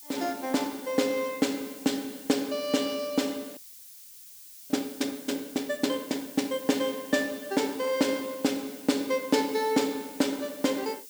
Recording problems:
hiss; SNR 15 dB
audio freezing; at 3.5 s for 1 s

